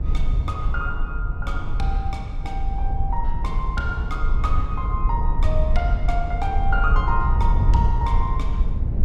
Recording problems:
rumble; below 64 Hz, SNR -4 dB

